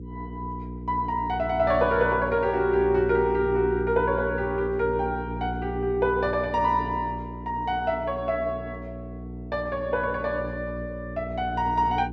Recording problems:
electrical hum; 60 Hz, harmonics up to 480 Hz, SNR 10 dB

